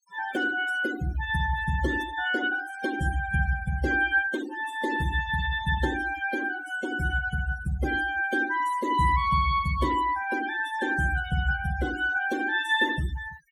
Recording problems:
noise reduction artefacts; signal-to-artefact ratio 12 dB

